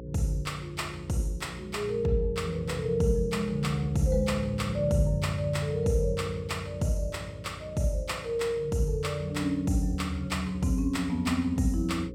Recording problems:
mains hum; 60 Hz, harmonics up to 540 Hz, SNR 15 dB

